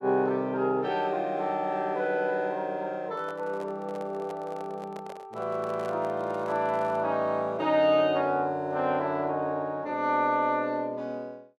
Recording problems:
microphone handling noise; from 3 to 7 s; peak -9 dB vs average level

